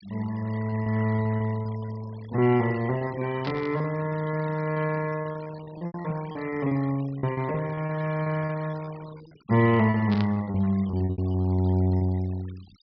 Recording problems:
treble missing; nothing above 5.5 kHz
noise reduction artefacts; signal-to-artefact ratio 20 dB
lost packets; 16% of the sound replaced, filled with repeated pitch periods
static burst; at 3.5 s and at 10 s; peak -6 dB vs average level

